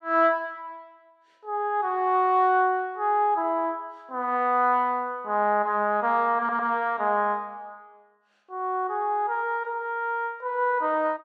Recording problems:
stutter; at 6.5 s

